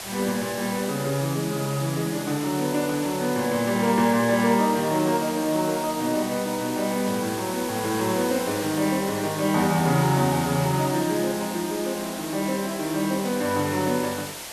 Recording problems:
background hiss; SNR 9 dB

